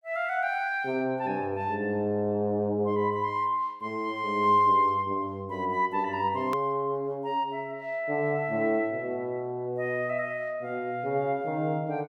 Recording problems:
click at an edit; at 6.5 s

